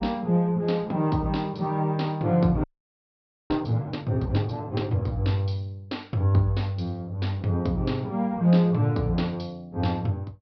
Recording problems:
low-pass filter; nothing above 5.5 kHz
audio freezing; at 2.5 s for 1 s

